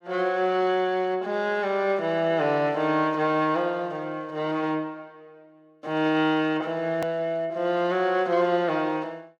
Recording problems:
click at an edit; at 7 s

